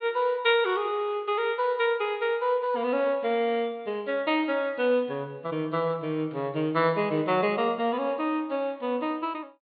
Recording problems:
treble cut off; nothing above 4.5 kHz

